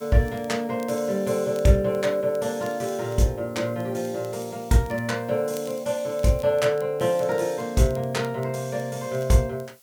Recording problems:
background hiss; slope 0 dB per octave, SNR 27 dB
crackle; vinyl, SNR 27 dB

